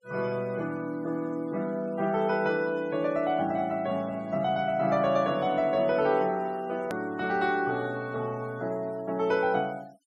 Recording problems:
denoising artefacts; signal-to-artefact ratio 25 dB
click at an edit; at 7 s

